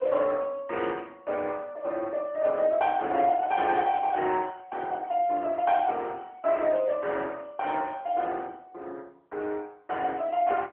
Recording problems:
phone line; 260 Hz to 3.4 kHz, AMR-NB

